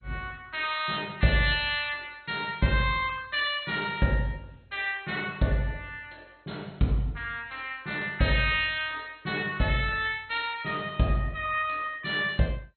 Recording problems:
codec artefacts; MP2, log-spectral distance 6 dB, nothing above 3.8 kHz

